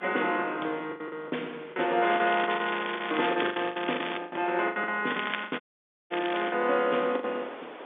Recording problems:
telephone audio; 280 Hz to 3.6 kHz, G.711
wind noise; below 1.6 kHz, SNR 16 dB
lost packets; 15% of the sound replaced, filled with the last packet
crackle; from 2 to 4 s and from 5 to 6.5 s; loose cable, SNR 8 dB
audio cutting out; at 5.5 s for 0.5 s

